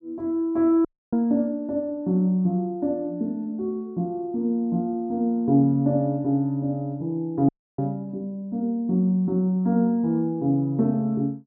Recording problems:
audio cutting out; at 1 s and at 7.5 s

